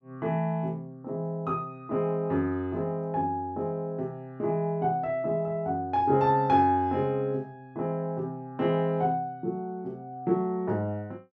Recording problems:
none

